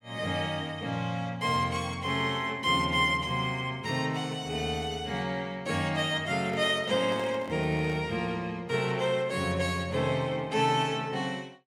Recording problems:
handling noise; from 6.5 to 8 s; peak -9 dB vs average level

